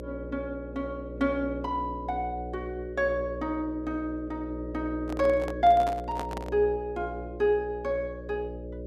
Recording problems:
electrical hum; 60 Hz, harmonics up to 600 Hz, SNR 9 dB
handling noise; from 5 to 6.5 s; peak -3 dB vs average level

